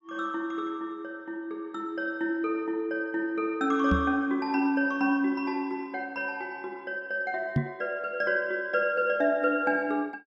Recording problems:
microphone thump; at 4 s and at 7.5 s; peak +7 dB vs average level

